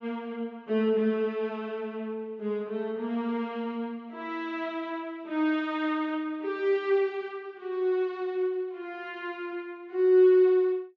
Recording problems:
low-pass filter; nothing above 7.6 kHz

